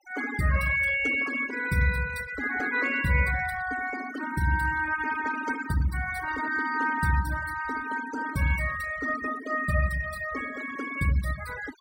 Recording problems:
denoising artefacts; signal-to-artefact ratio 13 dB

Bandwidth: 16.5 kHz